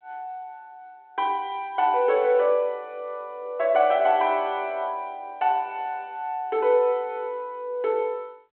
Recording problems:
phone line; 260 Hz to 3.6 kHz, G.726

